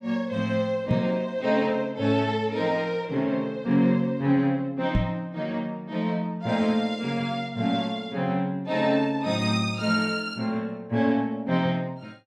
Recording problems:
microphone bump; at 1 s and at 5 s; peak +4 dB vs average level

